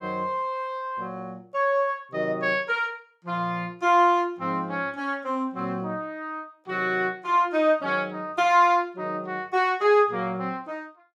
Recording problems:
none

